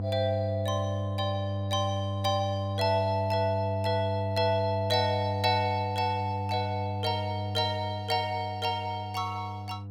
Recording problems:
hum; 50 Hz, harmonics up to 700 Hz, SNR 4 dB

